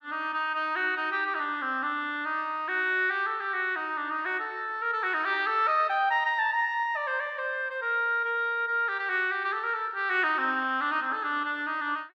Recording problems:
none

